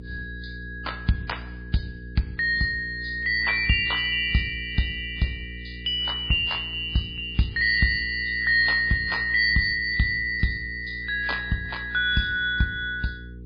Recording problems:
lossy codec; MP3, log-spectral distance 4 dB, nothing above 4.2 kHz
electrical hum; 60 Hz, harmonics up to 480 Hz, SNR 16 dB

